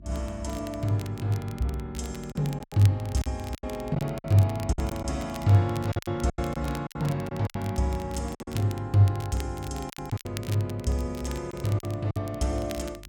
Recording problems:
hum; 50 Hz, harmonics up to 350 Hz, SNR 22 dB
crackling; vinyl, SNR 18 dB
packet loss; 9% of the sound replaced, filled with silence

